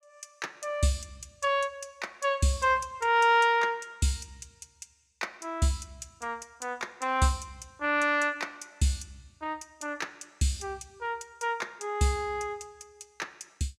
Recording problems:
none

